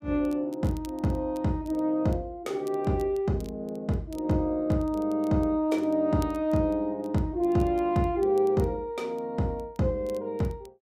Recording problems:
crackling; vinyl, SNR 28 dB

